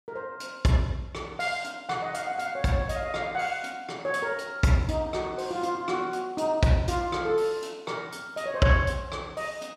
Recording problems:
none

